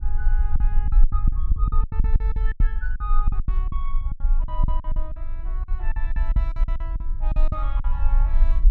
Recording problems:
low-frequency rumble; below 44 Hz, SNR -14 dB
lost packets; 17% of the sound replaced, filled with silence

